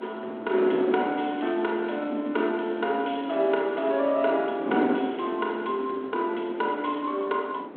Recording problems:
phone line; 240 Hz to 3.5 kHz, G.726
wind noise; below 540 Hz, SNR 8 dB
crackle; from 1 to 4 s; loose cable, SNR 29 dB

